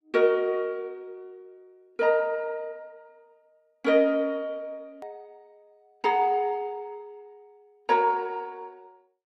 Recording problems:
click at an edit; at 5 s

